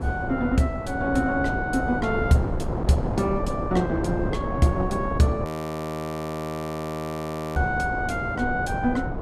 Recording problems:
electrical hum; 60 Hz, harmonics up to 720 Hz, SNR 21 dB
wind noise; below 530 Hz, SNR 4 dB
frozen audio; at 5.5 s for 2 s

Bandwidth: 14.5 kHz